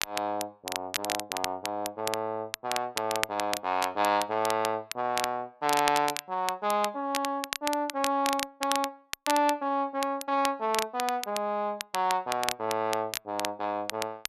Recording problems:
crackling; vinyl, SNR 6 dB

